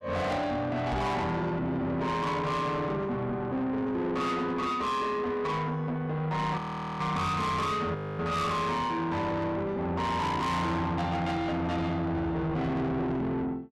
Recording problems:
distorted audio; soft clipping, signal-to-distortion ratio 8 dB
microphone bump; at 1 s; peak +2 dB vs average level
frozen audio; at 6.5 s and at 8 s

